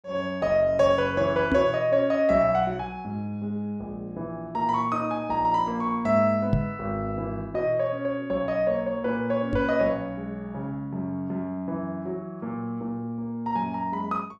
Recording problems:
knock on the microphone; at 1.5 s, at 6.5 s and at 9.5 s; peak +5 dB vs average level

